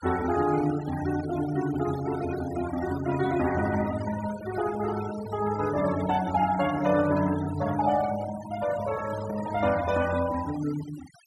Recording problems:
noise reduction artefacts; signal-to-artefact ratio 13 dB

